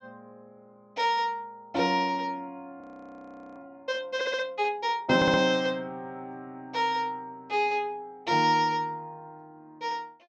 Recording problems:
treble cut off; nothing above 8 kHz
audio freezing; at 3 s for 1 s
stutter; at 4 s and at 5 s

